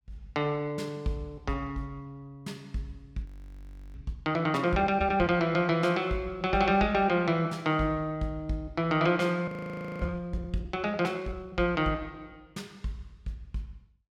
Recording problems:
frozen audio; at 3.5 s for 0.5 s and at 9.5 s for 0.5 s

